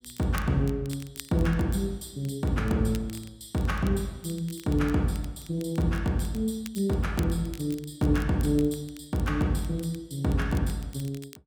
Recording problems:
crackling; vinyl, SNR 20 dB

